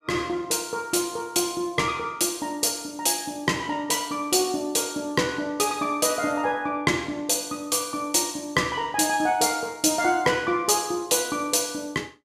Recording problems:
none

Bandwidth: 14.5 kHz